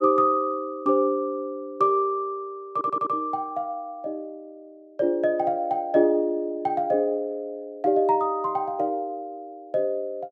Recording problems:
audio stuttering; at 2.5 s

